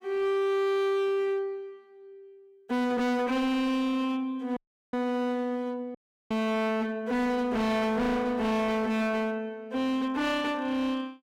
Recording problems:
distortion; hard clipping, signal-to-distortion ratio 7 dB
audio cutting out; at 4.5 s and at 6 s

